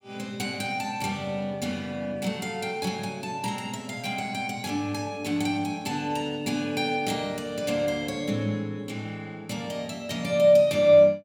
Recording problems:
none

